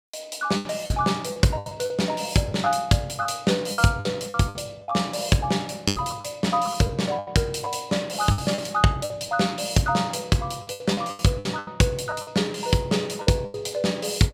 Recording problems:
lost packets; 11% of the sound replaced, filled with the last packet

